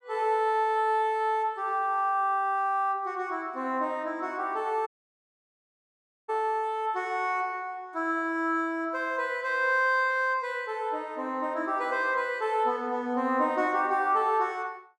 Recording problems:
dropout; at 5 s for 1.5 s

